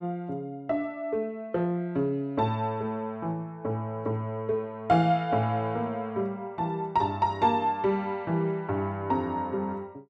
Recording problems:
none

